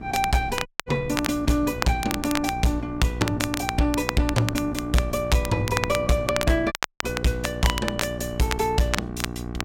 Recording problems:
distortion; hard clipping, signal-to-distortion ratio 12 dB
electrical hum; 60 Hz, harmonics up to 1.6 kHz, SNR 10 dB
wind on the microphone; below 210 Hz, SNR 17 dB
crackle; vinyl, SNR 7 dB
audio cutting out; at 0.5 s and at 6.5 s

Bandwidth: 16 kHz